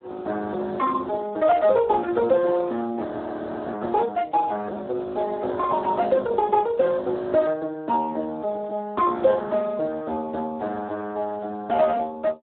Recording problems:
phone line; 240 Hz to 2.1 kHz, Speex
audio freezing; at 3 s for 0.5 s

